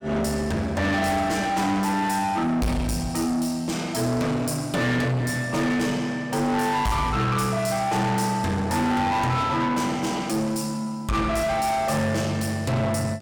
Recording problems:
distortion; soft clipping, signal-to-distortion ratio 7 dB

